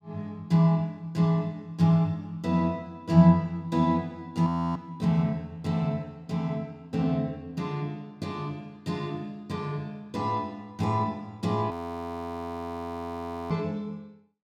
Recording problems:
frozen audio; at 4.5 s and at 12 s for 2 s

